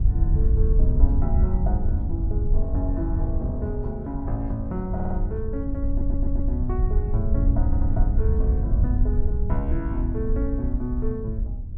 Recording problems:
wind noise; below 70 Hz, SNR -6 dB
stutter; at 5 s, at 6 s and at 7.5 s

